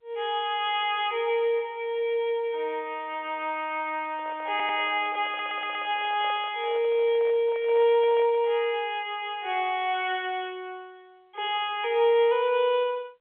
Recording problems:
telephone audio; 320 Hz to 3.7 kHz, G.711
microphone handling noise; from 4 to 8.5 s; peak -11 dB vs average level
audio stuttering; at 4.5 s and at 5.5 s

